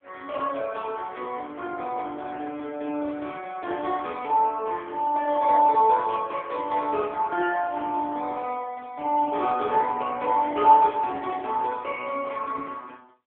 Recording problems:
telephone audio; 260 Hz to 3.3 kHz, AMR-NB

